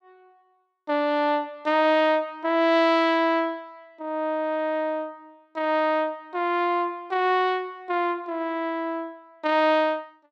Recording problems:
none

